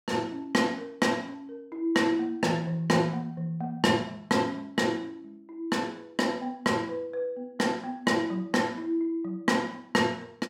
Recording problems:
none

